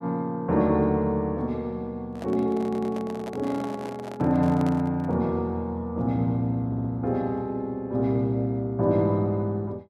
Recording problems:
microphone handling noise; from 2 to 5 s; peak -8 dB vs average level
audio stuttering; at 2.5 s and at 6.5 s

